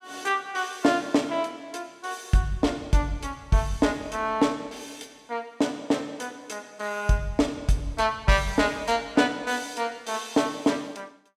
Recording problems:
none

